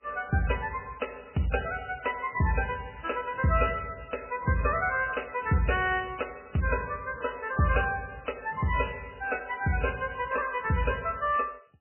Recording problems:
codec artefacts; MP3, log-spectral distance 8 dB, nothing above 2.6 kHz

